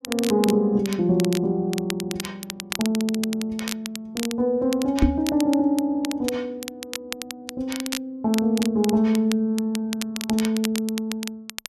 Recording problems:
crackle; vinyl, SNR 10 dB
microphone thump; at 5 s; peak +8 dB vs average level

